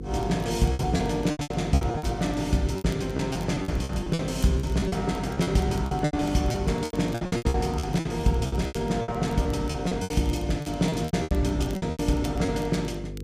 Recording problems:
hum; 50 Hz, harmonics up to 500 Hz, SNR 10 dB
crackle; vinyl, SNR 25 dB
lost packets; 17% of the sound replaced, filled with repeated pitch periods

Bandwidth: 15 kHz